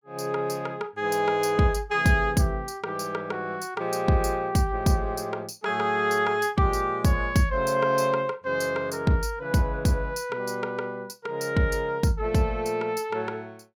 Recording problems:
none

